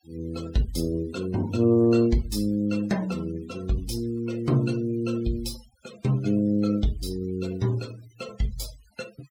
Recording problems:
denoising artefacts; signal-to-artefact ratio 21 dB

